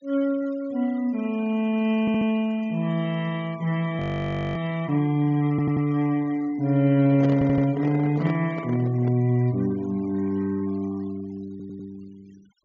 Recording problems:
treble missing; nothing above 7.2 kHz
noise reduction artefacts; signal-to-artefact ratio 25 dB
stutter; 4 times, first at 2 s
audio freezing; at 4 s for 0.5 s
microphone handling noise; from 7 to 9 s; peak -5 dB vs average level

